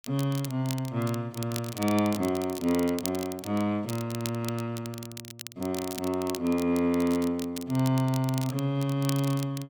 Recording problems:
crackle; vinyl, SNR 12 dB

